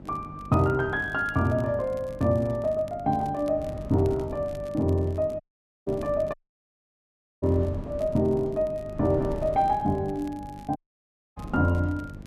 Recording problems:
hum; 50 Hz, harmonics up to 850 Hz, SNR 19 dB
wind noise; below 240 Hz, SNR 16 dB
crackling; vinyl, SNR 29 dB
dropout; at 5.5 s, at 6.5 s for 1 s and at 11 s for 0.5 s

